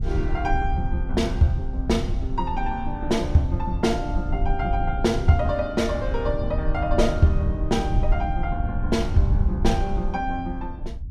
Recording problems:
rumble; below 76 Hz, SNR 3 dB

